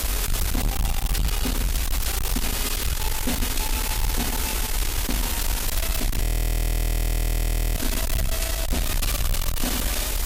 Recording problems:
lossy compression; Vorbis, log-spectral distance 8 dB
distorted audio; hard clipping, uneven, signal-to-distortion ratio 6 dB
background hiss; slope -1 dB per octave, SNR -4 dB
low-frequency rumble; below 78 Hz, SNR -3 dB
audio freezing; at 6 s for 1.5 s

